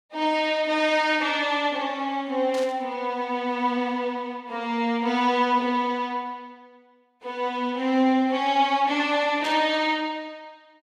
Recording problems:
burst of static; at 2.5 s and at 9.5 s; peak -9 dB vs average level

